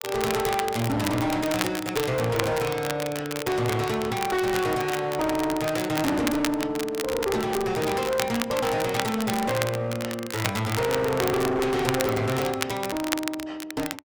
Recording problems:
distorted audio; hard clipping, uneven, signal-to-distortion ratio 6 dB
crackle; vinyl, SNR 7 dB

